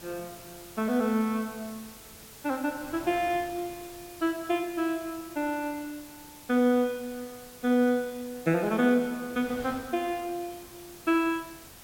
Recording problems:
hiss; slope +1 dB per octave, SNR 19 dB
wind on the microphone; below 1.8 kHz, SNR 23 dB

